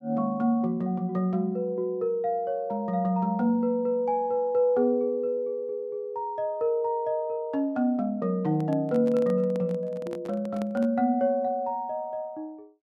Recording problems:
microphone handling noise; from 8.5 to 11 s; peak -8 dB vs average level

